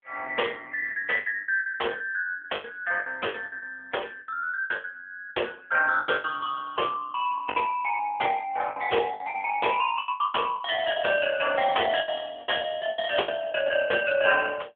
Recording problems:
phone line; 370 Hz to 3.3 kHz, AMR-NB
packet loss; 14% of the sound replaced, filled with the last packet

